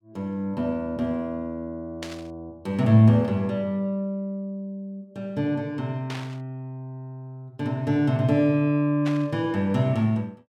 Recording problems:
burst of static; at 2 s, at 6 s and at 9 s; peak -7 dB vs average level

